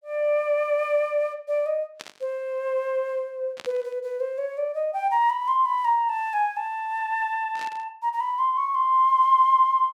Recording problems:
static burst; at 2 s, at 3.5 s and at 7.5 s; peak -9 dB vs average level

